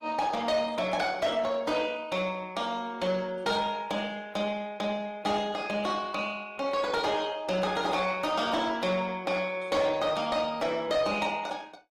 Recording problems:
lossy compression; Opus, log-spectral distance 3 dB, nothing above 18.5 kHz
distortion; soft clipping, signal-to-distortion ratio 12 dB

